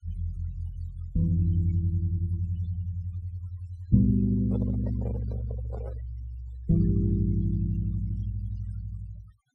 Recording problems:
denoising artefacts; signal-to-artefact ratio 22 dB
microphone handling noise; from 4.5 to 6 s; peak -7 dB vs average level

